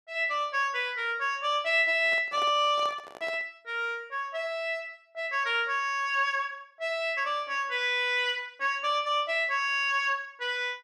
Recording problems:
handling noise; from 2 to 3.5 s; peak -8 dB vs average level

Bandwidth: 12.5 kHz